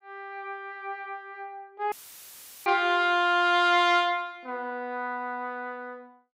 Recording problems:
dropout; at 2 s for 0.5 s; filled with static

